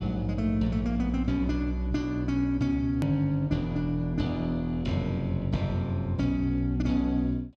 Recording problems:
click at an edit; at 3 s

